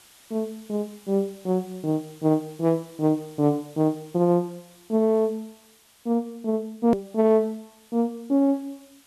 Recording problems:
background hiss; slope 0 dB per octave, SNR 27 dB
edit click; at 7 s

